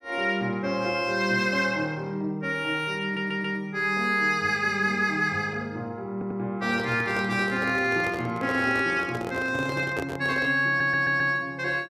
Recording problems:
stutter; at 3 s, at 6 s and at 11 s
microphone handling noise; from 6.5 to 11 s; peak -3 dB vs average level

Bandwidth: 15 kHz